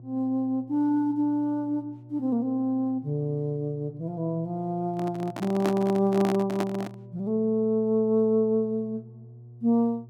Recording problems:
electrical hum; 60 Hz, harmonics up to 480 Hz, SNR 20 dB
microphone handling noise; from 5 to 7 s; peak 0 dB vs average level

